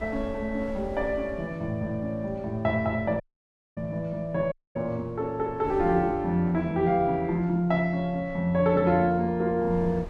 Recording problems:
wind noise; below 240 Hz, SNR 20 dB
dropout; at 3 s for 0.5 s and at 4.5 s

